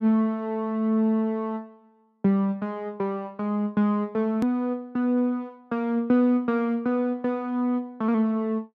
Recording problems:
hard cut with a click; at 4.5 s

